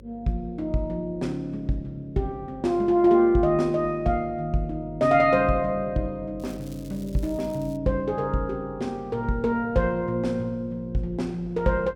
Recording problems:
hum; 50 Hz, harmonics up to 550 Hz, SNR 21 dB
crackle; from 6.5 to 8 s; loose cable, SNR 26 dB

